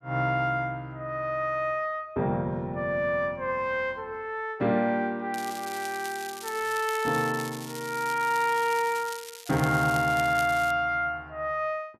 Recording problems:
crackle; from 5.5 to 11 s; loose cable, SNR 13 dB

